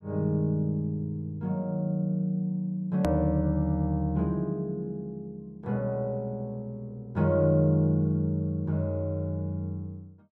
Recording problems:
click at an edit; at 3 s

